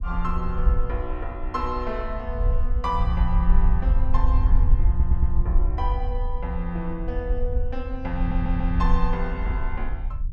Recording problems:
low-frequency rumble; below 60 Hz, SNR -5 dB
audio stuttering; at 5 s and at 8 s

